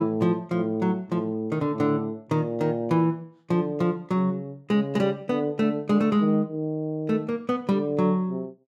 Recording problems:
none

